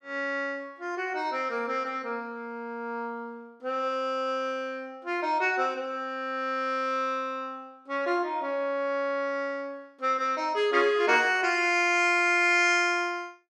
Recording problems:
none

